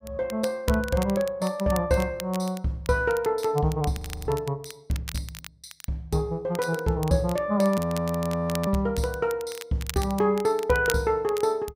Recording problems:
crackle; vinyl, SNR 15 dB
audio freezing; at 4 s and at 8 s for 1 s

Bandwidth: 15.5 kHz